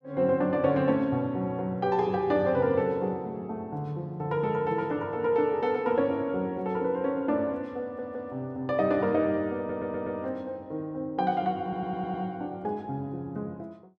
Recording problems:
audio stuttering; at 8 s, at 9.5 s and at 12 s

